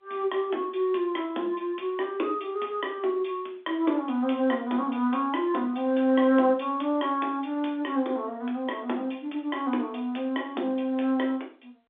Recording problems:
phone line; 220 Hz to 3.6 kHz, G.711

